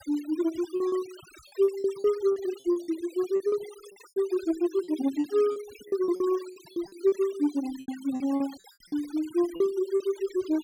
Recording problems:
noise reduction artefacts; signal-to-artefact ratio 19 dB
packet loss; 12% of the sound replaced, filled with repeated pitch periods

